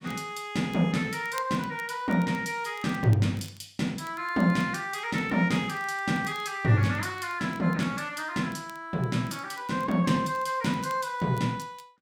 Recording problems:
crackling; vinyl, SNR 26 dB

